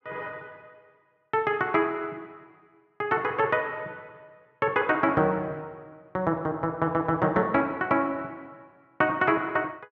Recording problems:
none

